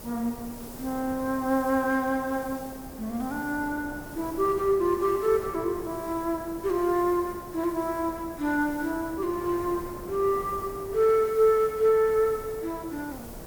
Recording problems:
background hiss; SNR 19 dB
wind on the microphone; below 630 Hz, SNR 17 dB

